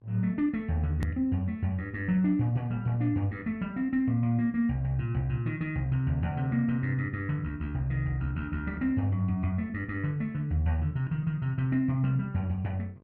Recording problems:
electrical hum; 50 Hz, harmonics up to 1.2 kHz, SNR 31 dB
edit click; at 1 s

